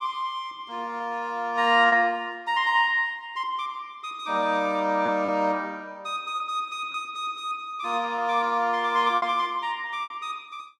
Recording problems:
packet loss; 3% of the sound replaced, filled with repeated pitch periods

